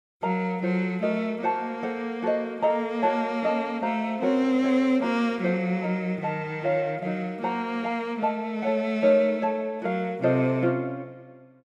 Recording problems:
none

